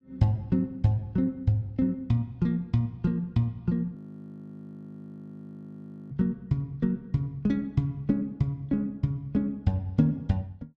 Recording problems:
audio freezing; at 4 s for 2 s

